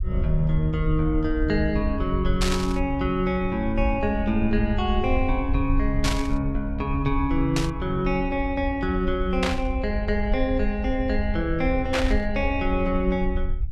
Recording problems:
low-frequency rumble; below 68 Hz, SNR 5 dB
static burst; 5 times, first at 2.5 s; peak +3 dB vs average level

